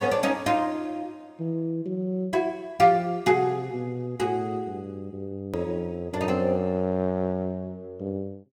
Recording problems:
click at an edit; at 5.5 s

